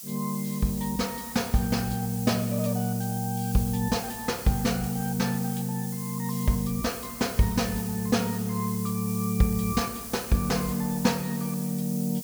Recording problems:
hiss; SNR 9 dB

